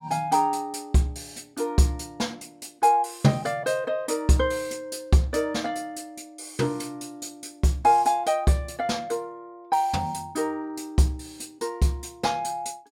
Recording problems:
none

